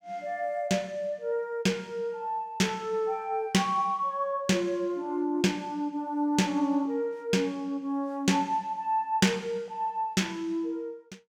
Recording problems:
none

